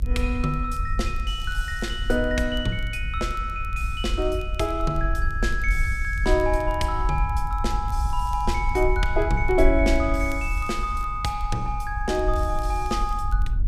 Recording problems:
low-frequency rumble; below 60 Hz, SNR 3 dB
crackle; vinyl, SNR 29 dB

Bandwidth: 15 kHz